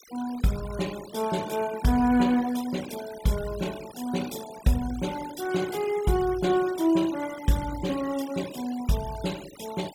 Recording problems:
noise reduction artefacts; signal-to-artefact ratio 16 dB

